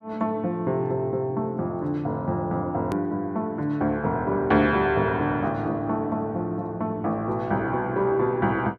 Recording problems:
click at an edit; at 3 s

